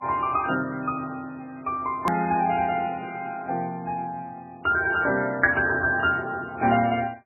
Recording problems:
lossy codec; MP3, log-spectral distance 3 dB, nothing above 14.1 kHz
hard cut with a click; at 2 s

